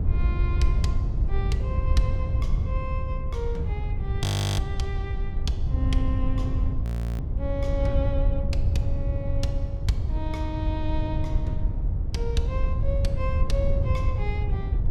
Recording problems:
wind on the microphone; below 90 Hz, SNR -6 dB
audio freezing; at 4 s and at 7 s

